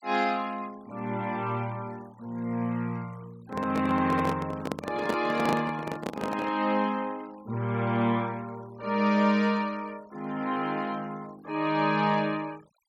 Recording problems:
denoising artefacts; signal-to-artefact ratio 24 dB
handling noise; from 3.5 to 6.5 s; peak +3 dB vs average level

